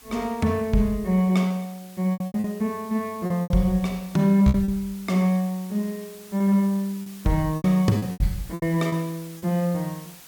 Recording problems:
hiss; slope 0 dB per octave, SNR 21 dB
lost packets; 9% of the sound replaced, filled with repeated pitch periods

